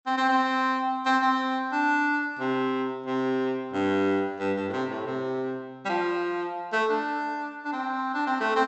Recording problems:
treble cut off; nothing above 7.9 kHz

